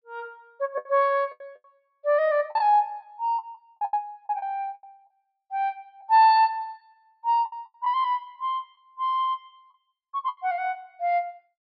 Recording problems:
treble cut off; nothing above 5.2 kHz
lost packets; 9% of the sound replaced, filled with the last packet

